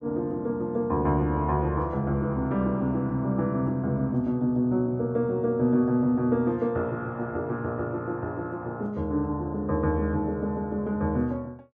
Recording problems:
none

